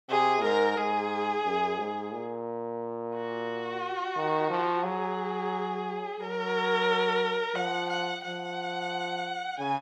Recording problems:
none

